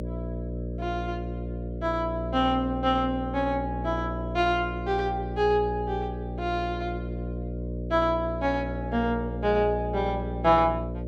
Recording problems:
hum; 60 Hz, harmonics up to 600 Hz, SNR 6 dB

